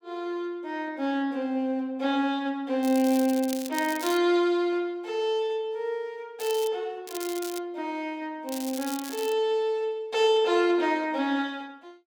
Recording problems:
crackling; 4 times, first at 3 s; loose cable, SNR 12 dB

